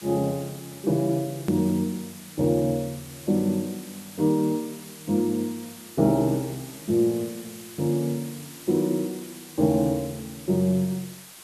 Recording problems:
hiss; slope 0 dB per octave, SNR 17 dB
hard cut with a click; at 1.5 s

